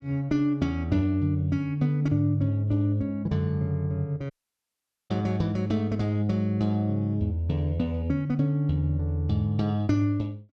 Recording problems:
audio cutting out; at 4.5 s for 1 s

